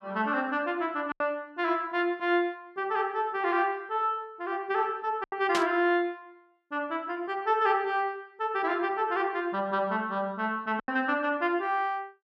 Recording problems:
lost packets; 2% of the sound replaced, filled with silence
static burst; at 5.5 s; peak +1 dB vs average level

